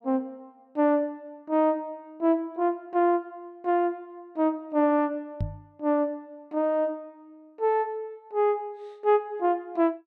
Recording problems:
knock on the microphone; at 5.5 s; peak +1 dB vs average level

